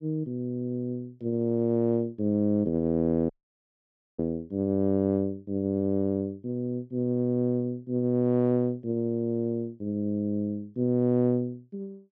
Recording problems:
dropout; at 3.5 s for 1 s

